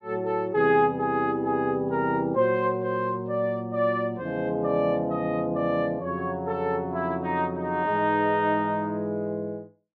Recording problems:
none

